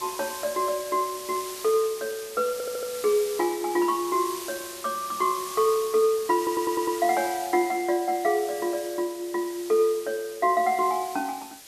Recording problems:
background hiss; slope +1 dB per octave, SNR 12 dB
stutter; at 2.5 s and at 6.5 s

